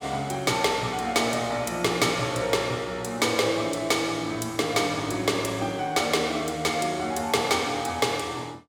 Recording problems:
none

